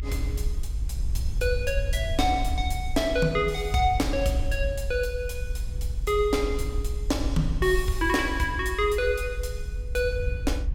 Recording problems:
low-frequency rumble; below 62 Hz, SNR 5 dB

